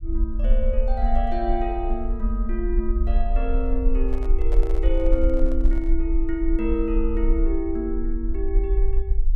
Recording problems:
low-frequency rumble; below 44 Hz, SNR -2 dB
microphone handling noise; from 4 to 6 s; peak -8 dB vs average level

